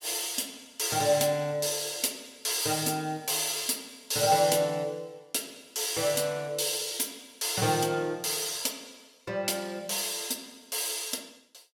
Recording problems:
none

